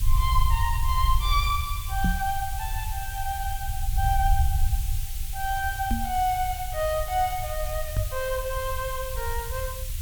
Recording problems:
background hiss; SNR 8 dB
rumble; below 72 Hz, SNR 2 dB
microphone thump; at 2 s, at 6 s and at 8 s; peak +6 dB vs average level

